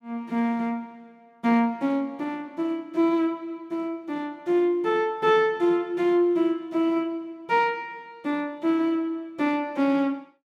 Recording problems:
none

